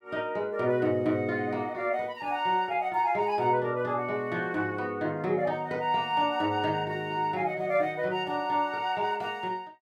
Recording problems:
none

